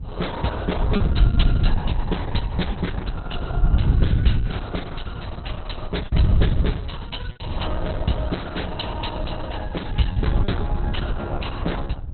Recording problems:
lossy codec; Opus, log-spectral distance 4 dB, nothing above 4.1 kHz
wind on the microphone; below 110 Hz, SNR -4 dB
lost packets; 3% of the sound replaced, filled with repeated pitch periods

